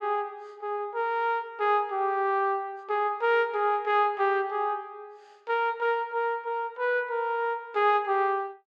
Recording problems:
none

